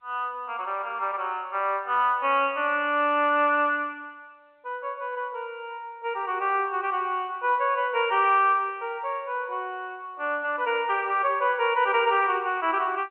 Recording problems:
telephone audio; 260 Hz to 3.1 kHz, G.711

